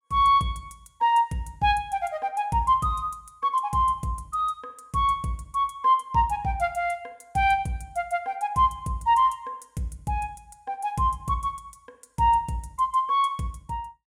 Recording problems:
none

